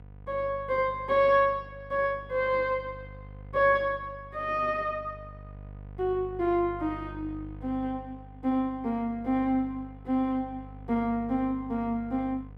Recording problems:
electrical hum; 50 Hz, harmonics up to 750 Hz, SNR 17 dB

